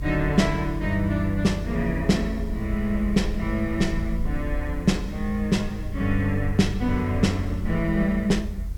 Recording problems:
hiss; slope -2 dB per octave, SNR 28 dB
rumble; below 76 Hz, strongest tone 46 Hz, SNR 8 dB

